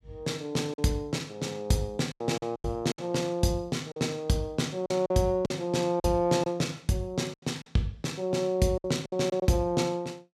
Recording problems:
packet loss; 8% of the sound replaced, filled with silence

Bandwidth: 14.5 kHz